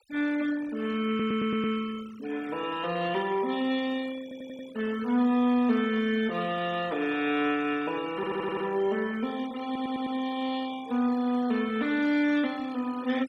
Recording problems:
denoising artefacts; signal-to-artefact ratio 18 dB
stutter; 4 times, first at 1 s

